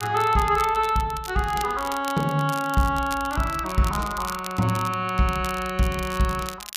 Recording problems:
crackling; vinyl, SNR 15 dB

